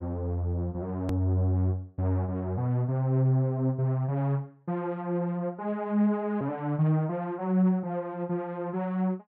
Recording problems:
hard cut with a click; at 1 s

